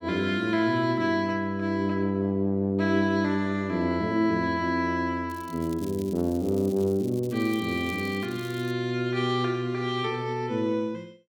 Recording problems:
crackling; from 5.5 to 8.5 s; loose cable, SNR 22 dB

